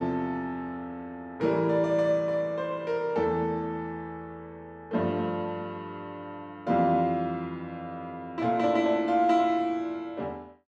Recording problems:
none

